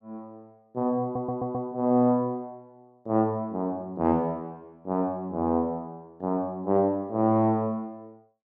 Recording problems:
audio stuttering; at 1 s

